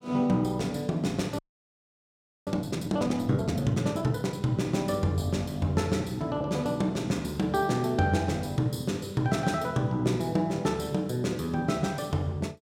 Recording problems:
frozen audio; at 1.5 s for 1 s

